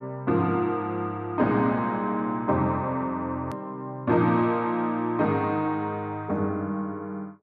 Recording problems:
hard cut with a click; at 3.5 s

